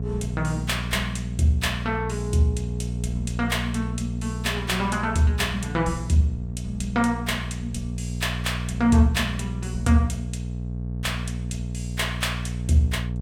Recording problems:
hum; 60 Hz, harmonics up to 480 Hz, SNR 5 dB

